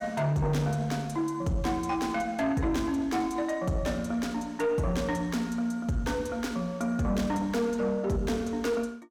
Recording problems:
distorted audio; soft clipping, signal-to-distortion ratio 11 dB

